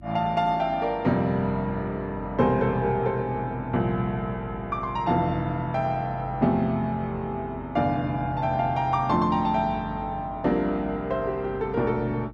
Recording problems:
hum; 50 Hz, harmonics up to 350 Hz, SNR 18 dB

